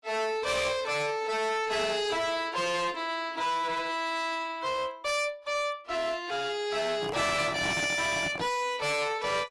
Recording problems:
codec artefacts; AAC, log-spectral distance 3 dB, nothing above 11.3 kHz
distortion; hard clipping, signal-to-distortion ratio 7 dB
microphone handling noise; from 7 to 8.5 s; peak -1 dB vs average level

